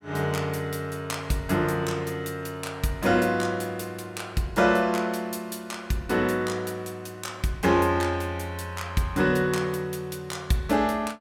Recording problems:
none

